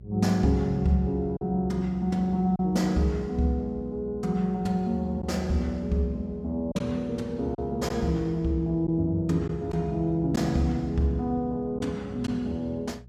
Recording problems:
hum; 60 Hz, harmonics up to 420 Hz, SNR 20 dB
packet loss; 1.7% of the sound replaced, filled with silence

